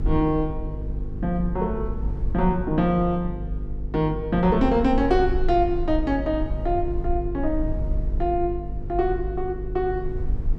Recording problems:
electrical hum; 50 Hz, harmonics up to 500 Hz, SNR 9 dB
rumble; below 54 Hz, strongest tone 20 Hz, SNR 9 dB

